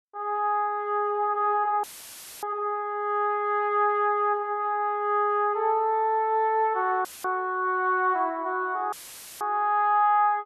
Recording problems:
dropout; at 2 s for 0.5 s, at 7 s and at 9 s; filled with static

